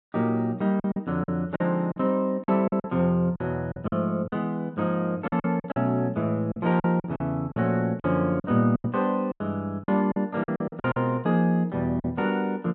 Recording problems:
packet loss; 11% of the sound replaced, filled with silence

